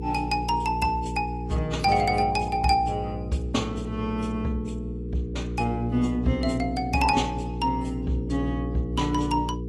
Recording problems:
lossy compression; AAC, log-spectral distance 2 dB, nothing above 12 kHz
hum; 60 Hz, harmonics up to 480 Hz, SNR 6 dB

